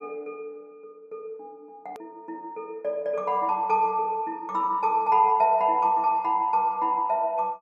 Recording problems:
click at an edit; at 2 s

